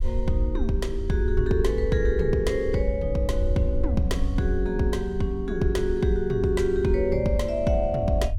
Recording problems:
low-frequency rumble; below 68 Hz, SNR 6 dB

